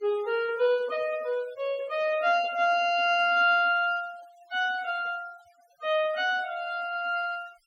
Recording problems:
denoising artefacts; signal-to-artefact ratio 24 dB

